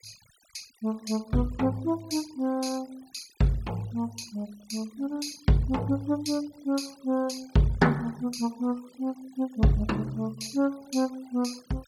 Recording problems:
noise reduction artefacts; signal-to-artefact ratio 24 dB

